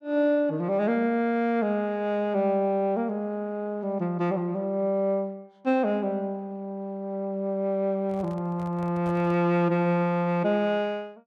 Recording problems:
microphone handling noise; from 8 to 9.5 s; peak -12 dB vs average level

